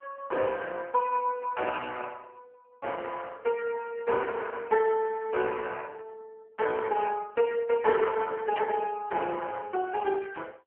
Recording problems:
telephone audio; 320 Hz to 3.1 kHz, AMR-NB
static burst; at 8.5 s; peak -5 dB vs average level

